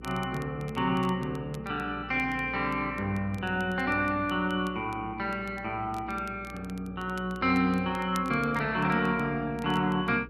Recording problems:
hum; 60 Hz, harmonics up to 480 Hz, SNR 17 dB
crackling; vinyl, SNR 25 dB

